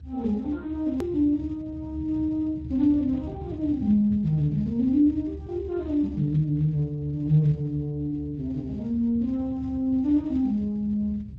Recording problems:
codec artefacts; Speex, then MP2, log-spectral distance 2 dB, nothing above 13.1 kHz
low-frequency rumble; below 140 Hz, strongest tone 72 Hz, SNR 14 dB
click at an edit; at 1 s

